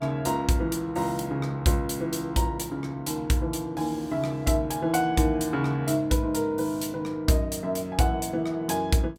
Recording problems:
electrical hum; 60 Hz, harmonics up to 900 Hz, SNR 24 dB

